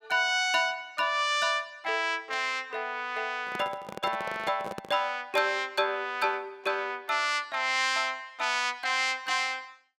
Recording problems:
microphone handling noise; from 3.5 to 5 s; peak -6 dB vs average level

